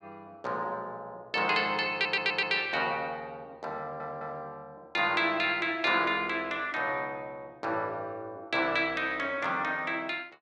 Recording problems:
stutter; at 2 s and at 4 s

